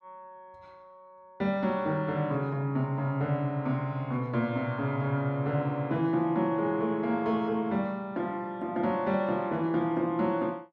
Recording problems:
none

